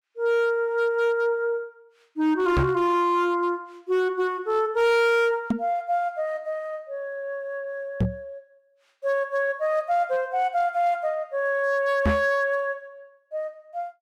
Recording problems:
distortion; hard clipping, signal-to-distortion ratio 11 dB
knock on the microphone; 4 times, first at 2.5 s; peak +5 dB vs average level

